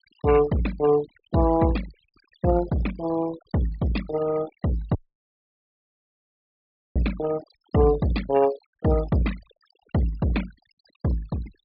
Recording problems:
low-pass filter; nothing above 5.5 kHz
denoising artefacts; signal-to-artefact ratio 16 dB
audio cutting out; at 5 s for 2 s

